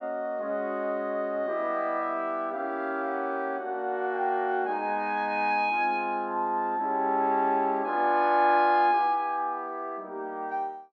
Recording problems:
none

